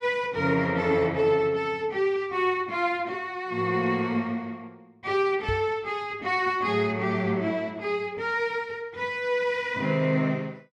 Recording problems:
microphone thump; at 5.5 s; peak -2 dB vs average level

